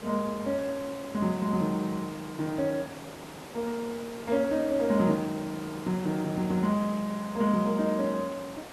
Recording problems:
background hiss; slope -5 dB per octave, SNR 14 dB

